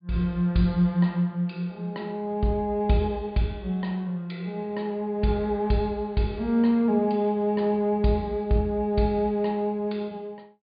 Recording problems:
treble cut off; nothing above 4.7 kHz

